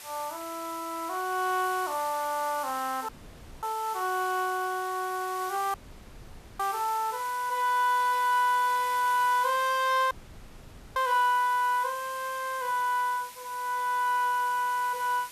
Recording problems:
hiss; slope +1 dB per octave, SNR 15 dB
audio cutting out; at 3 s for 0.5 s, at 5.5 s for 1 s and at 10 s for 1 s

